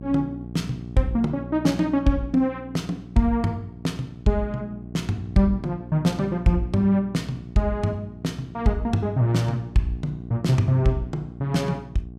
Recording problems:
hum; 60 Hz, harmonics up to 780 Hz, SNR 14 dB

